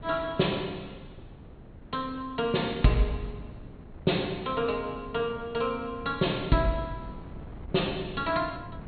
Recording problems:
treble cut off; nothing above 4.3 kHz
wind on the microphone; below 280 Hz, SNR 16 dB

